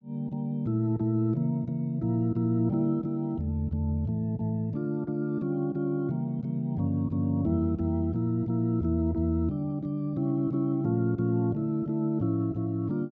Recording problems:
none

